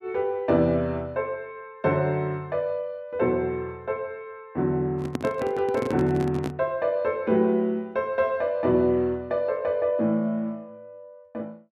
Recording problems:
microphone handling noise; from 5 to 6.5 s; peak 0 dB vs average level

